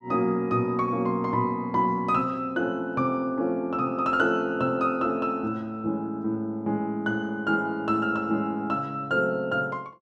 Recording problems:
none

